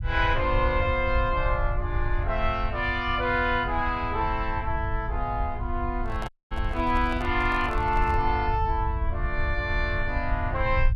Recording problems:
rumble; below 78 Hz, SNR 5 dB
handling noise; from 6 to 8.5 s; peak -6 dB vs average level
dropout; at 6.5 s

